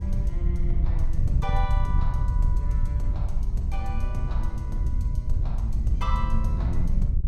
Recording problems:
wind noise; below 74 Hz, SNR -9 dB

